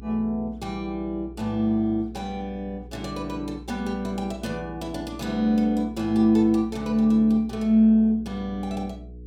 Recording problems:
hum; 60 Hz, harmonics up to 480 Hz, SNR 18 dB

